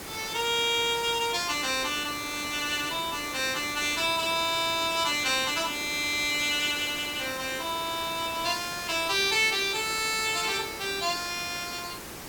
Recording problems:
background hiss; slope -4 dB per octave, SNR 11 dB

